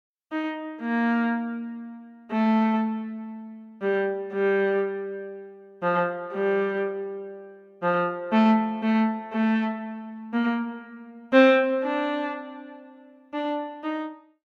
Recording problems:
none

